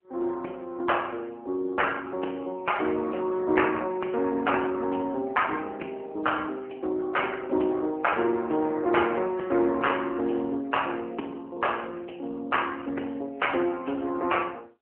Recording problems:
phone line; 240 Hz to 3.1 kHz, AMR-NB

